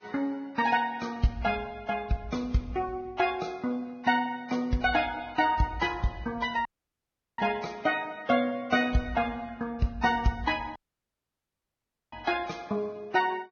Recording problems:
lossy codec; Vorbis, log-spectral distance 3 dB, nothing above 6.3 kHz
audio cutting out; at 6.5 s for 0.5 s and at 11 s for 1.5 s

